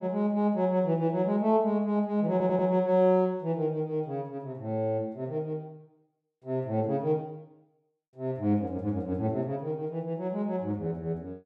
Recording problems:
stutter; at 2.5 s

